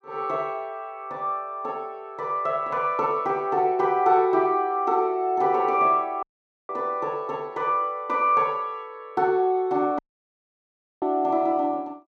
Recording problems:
dropout; at 6 s and at 10 s for 1 s

